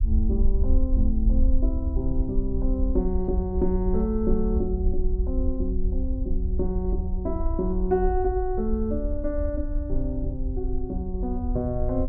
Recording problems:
rumble; below 60 Hz, SNR 0 dB

